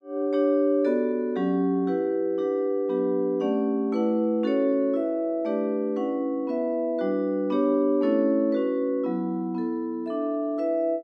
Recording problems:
none

